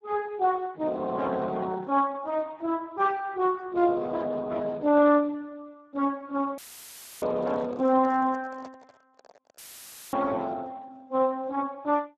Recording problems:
lossy compression; Speex, log-spectral distance 3 dB
audio cutting out; at 6.5 s for 0.5 s and at 9.5 s for 0.5 s; filled with static
handling noise; from 7 to 9.5 s; peak -15 dB vs average level

